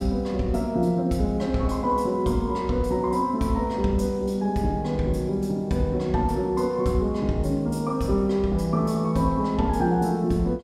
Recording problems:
none

